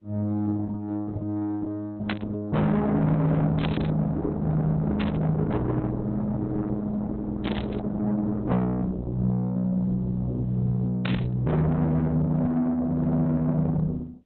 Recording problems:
lossy codec; Opus, log-spectral distance 2 dB
distortion; soft clipping, signal-to-distortion ratio 7 dB
static burst; 5 times, first at 2 s; peak 0 dB vs average level

